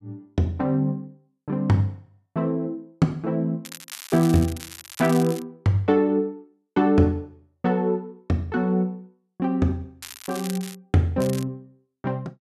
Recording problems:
crackle; from 3.5 to 5.5 s, at 10 s and at 11 s; loose cable, SNR 14 dB

